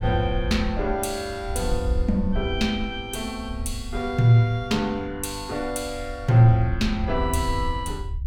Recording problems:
low-frequency rumble; below 82 Hz, SNR 8 dB

